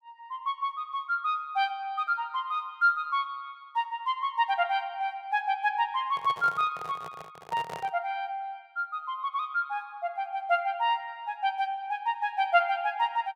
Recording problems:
microphone handling noise; from 6 to 8 s; peak -6 dB vs average level

